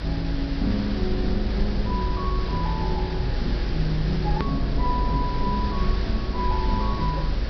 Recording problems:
low-pass filter; nothing above 5.5 kHz
background hiss; SNR 9 dB
low-frequency rumble; below 96 Hz, SNR -1 dB
click at an edit; at 4.5 s

